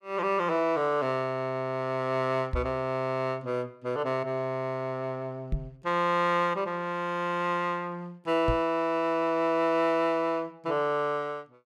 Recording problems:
microphone thump; at 2.5 s, at 5.5 s and at 8.5 s; peak +2 dB vs average level

